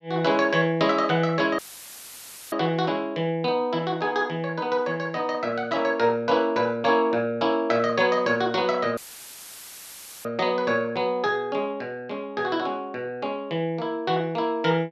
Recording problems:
audio cutting out; at 1.5 s for 1 s and at 9 s for 1.5 s; filled with static

